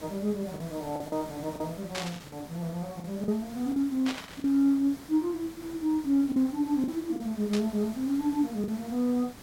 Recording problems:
background hiss; slope -4 dB per octave, SNR 17 dB
lost packets; 6% of the sound replaced, filled with the last packet
burst of static; at 2 s, at 4 s and at 7.5 s; peak -1 dB vs average level

